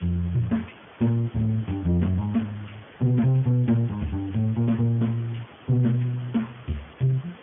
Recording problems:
treble cut off; nothing above 3.4 kHz
lossy codec; Speex, log-spectral distance 8 dB
distorted audio; soft clipping, signal-to-distortion ratio 11 dB
background hiss; SNR 22 dB

